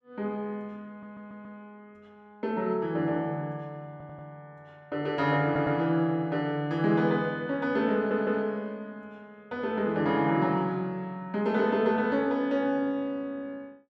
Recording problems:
audio stuttering; 4 times, first at 1 s

